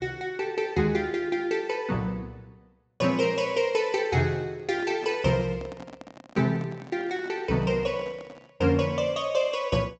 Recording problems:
treble missing; nothing above 8 kHz
microphone handling noise; from 4.5 to 8.5 s; peak -12 dB vs average level

